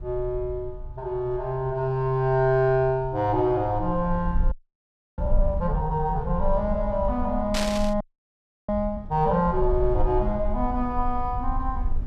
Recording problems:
rumble; below 56 Hz, strongest tone 22 Hz, SNR 8 dB
frozen audio; at 4.5 s for 0.5 s and at 8 s for 0.5 s
static burst; at 7.5 s; peak +1 dB vs average level

